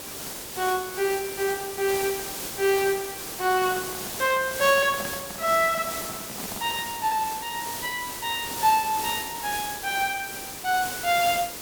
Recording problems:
background hiss; SNR 6 dB
microphone handling noise; from 3.5 to 7 s; peak -8 dB vs average level

